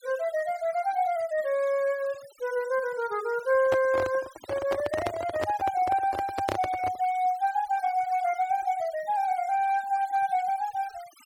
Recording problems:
noise reduction artefacts; signal-to-artefact ratio 21 dB
microphone handling noise; from 3.5 to 7 s; peak +2 dB vs average level

